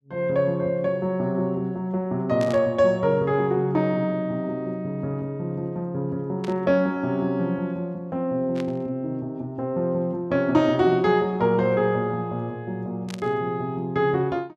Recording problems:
burst of static; 4 times, first at 2.5 s; peak -9 dB vs average level

